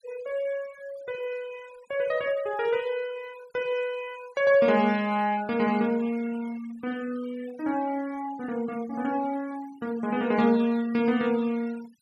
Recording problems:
noise reduction artefacts; signal-to-artefact ratio 20 dB

